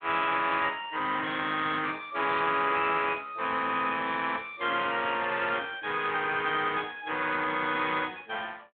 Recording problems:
telephone audio; 280 Hz to 3.5 kHz, Speex

